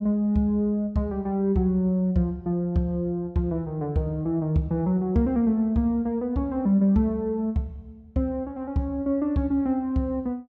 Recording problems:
none

